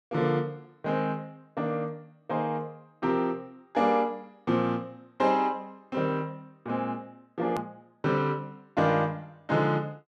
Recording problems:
edit click; at 7.5 s

